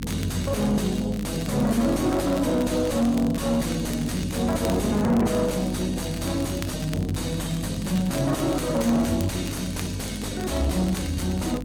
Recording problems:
codec artefacts; AAC, log-spectral distance 3 dB, nothing above 15.1 kHz
distortion; soft clipping, signal-to-distortion ratio 5 dB
hum; 50 Hz, harmonics up to 300 Hz, SNR 10 dB
crackling; vinyl, SNR 17 dB

